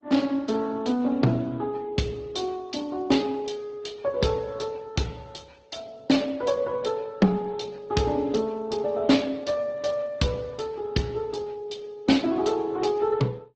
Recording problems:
lossy codec; Speex, then Opus, log-spectral distance 4 dB

